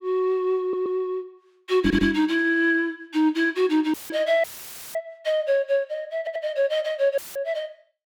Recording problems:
stutter; at 0.5 s, at 2 s and at 6 s
microphone thump; at 2 s; peak +4 dB vs average level
dropout; at 4 s, at 4.5 s for 0.5 s and at 7 s; filled with static

